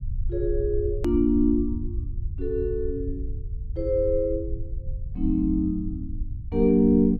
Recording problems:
low-frequency rumble; below 76 Hz, SNR 8 dB
edit click; at 1 s

